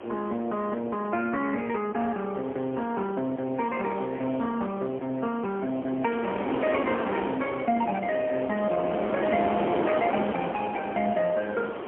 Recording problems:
phone line; 220 Hz to 3.3 kHz, AMR-NB, then MP3
wind on the microphone; below 910 Hz, SNR 6 dB

